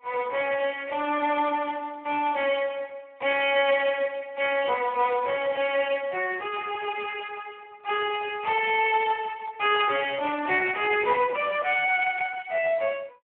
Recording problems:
phone line; 320 Hz to 3.2 kHz, Speex

